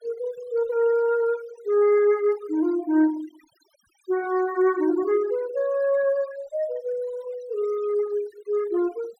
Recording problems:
denoising artefacts; signal-to-artefact ratio 20 dB

